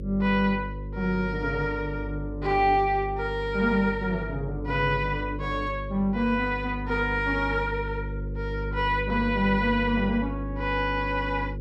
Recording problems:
mains hum; 50 Hz, harmonics up to 550 Hz, SNR 8 dB

